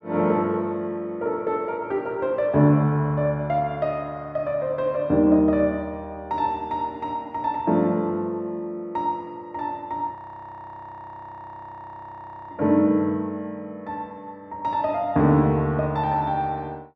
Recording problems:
audio freezing; at 10 s for 2.5 s

